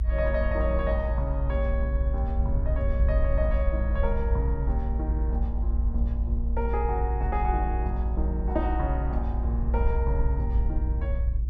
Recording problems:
rumble; below 60 Hz, strongest tone 58 Hz, SNR -4 dB

